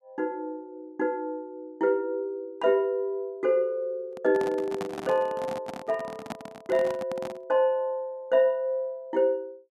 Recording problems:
microphone handling noise; from 4 to 7.5 s; peak -3 dB vs average level

